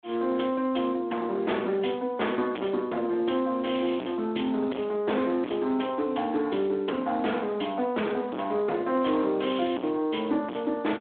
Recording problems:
telephone audio; 190 Hz to 3.5 kHz, Speex
distorted audio; hard clipping, signal-to-distortion ratio 5 dB

